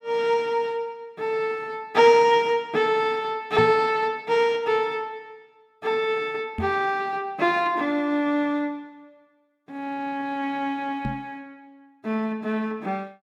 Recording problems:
microphone thump; at 3.5 s, at 6.5 s and at 11 s; peak 0 dB vs average level

